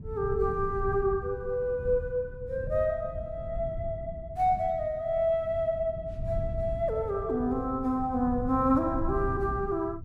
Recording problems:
wind on the microphone; below 120 Hz, SNR 10 dB

